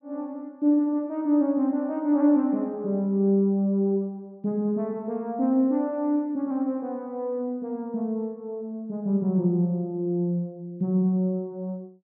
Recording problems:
none

